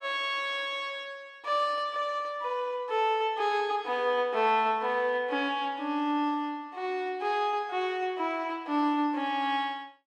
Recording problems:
none

